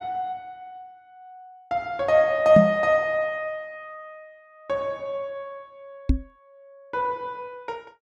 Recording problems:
knock on the microphone; at 2.5 s and at 6 s; peak +8 dB vs average level

